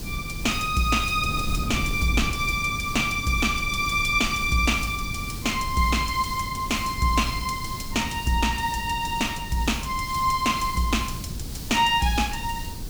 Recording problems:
hiss; SNR 15 dB
wind noise; below 170 Hz, SNR 10 dB

